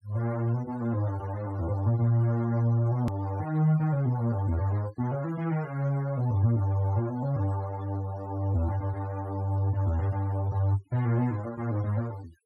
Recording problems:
denoising artefacts; signal-to-artefact ratio 22 dB
hard cut with a click; at 3 s

